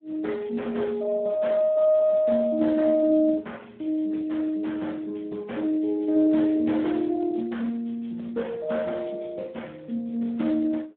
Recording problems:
telephone audio; 170 Hz to 3.3 kHz, Speex

